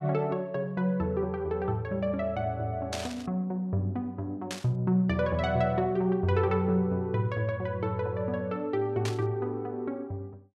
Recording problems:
static burst; at 3 s, at 4.5 s and at 9 s; peak -1 dB vs average level

